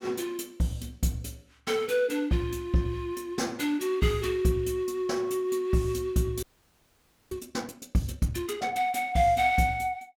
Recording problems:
frozen audio; at 6.5 s for 1 s

